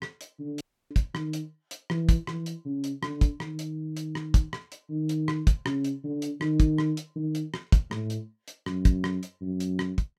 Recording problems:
audio cutting out; at 0.5 s

